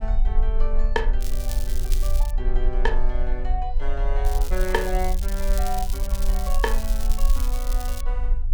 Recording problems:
rumble; below 40 Hz, strongest tone 18 Hz, SNR -5 dB
crackle; from 1 to 2.5 s and from 4.5 to 8 s; loose cable, SNR 7 dB

